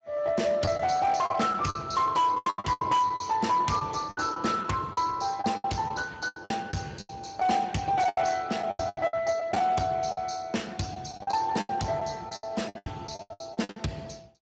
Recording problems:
codec artefacts; Speex, log-spectral distance 5 dB, nothing above 7.3 kHz
distorted audio; hard clipping, signal-to-distortion ratio 10 dB
packet loss; 15% of the sound replaced, filled with the last packet

